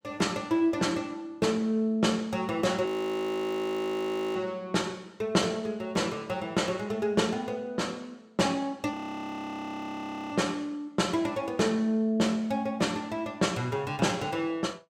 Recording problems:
frozen audio; at 3 s for 1.5 s and at 9 s for 1.5 s

